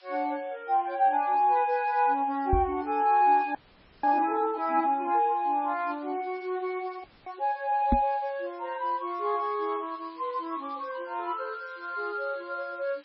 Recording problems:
lossy codec; MP3, log-spectral distance 6 dB
background hiss; SNR 27 dB
microphone bump; at 2.5 s and at 8 s; peak +6 dB vs average level
audio freezing; at 3.5 s and at 7 s

